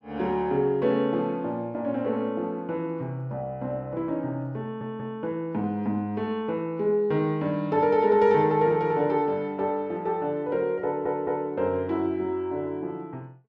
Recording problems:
audio stuttering; at 4.5 s and at 11 s

